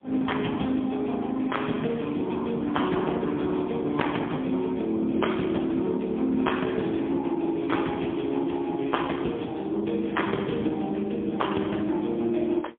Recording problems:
phone line; 150 Hz to 3.5 kHz, AMR-NB, then MP3

